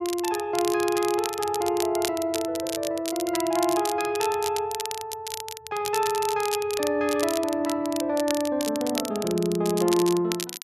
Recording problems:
crackling; vinyl, SNR 8 dB

